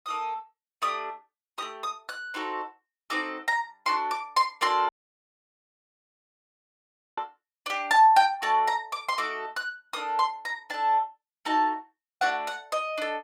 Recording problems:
dropout; at 5 s for 2.5 s

